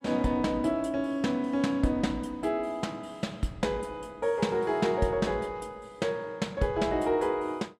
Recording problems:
none

